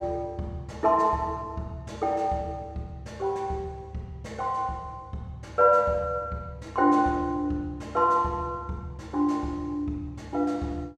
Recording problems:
none

